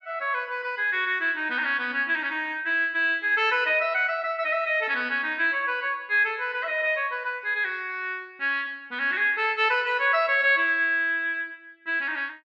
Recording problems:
none

